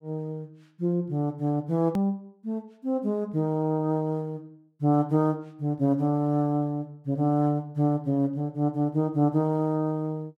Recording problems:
click at an edit; at 2 s

